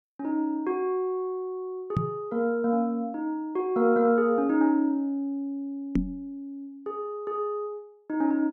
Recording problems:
knock on the microphone; at 2 s and at 6 s; peak +5 dB vs average level

